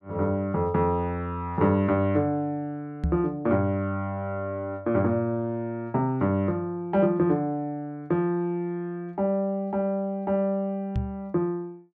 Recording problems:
microphone thump; at 3 s and at 11 s; peak +3 dB vs average level

